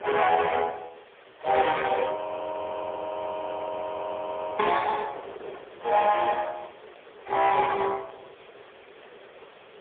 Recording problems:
telephone audio; 340 Hz to 3.5 kHz, AMR-NB, then MP3
distortion; hard clipping, uneven, signal-to-distortion ratio 13 dB
background hiss; SNR 27 dB
wind noise; below 890 Hz, SNR 20 dB
audio freezing; at 2 s for 2.5 s

